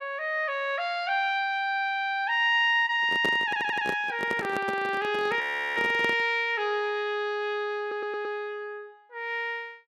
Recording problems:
microphone handling noise; from 3 to 6.5 s; peak -1 dB vs average level
stutter; at 3.5 s and at 8 s
audio freezing; at 5.5 s

